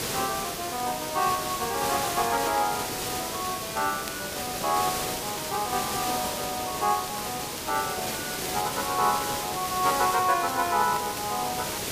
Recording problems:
hiss; SNR 2 dB
crackling; vinyl, SNR 21 dB

